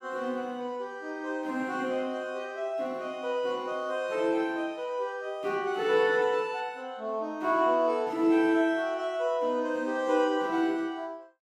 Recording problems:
none

